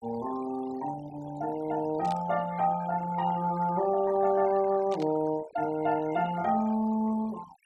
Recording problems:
noise reduction artefacts; signal-to-artefact ratio 19 dB
static burst; at 2 s and at 5 s; peak -13 dB vs average level

